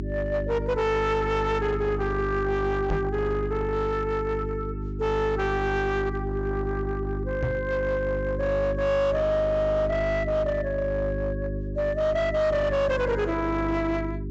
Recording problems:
low-pass filter; nothing above 8 kHz
distortion; hard clipping, signal-to-distortion ratio 12 dB
hum; 50 Hz, harmonics up to 400 Hz, SNR 6 dB
microphone thump; at 3 s and at 7.5 s; peak +1 dB vs average level

